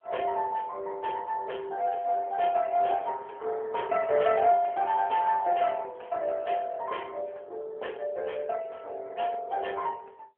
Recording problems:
telephone audio; 370 Hz to 3.3 kHz, AMR-NB

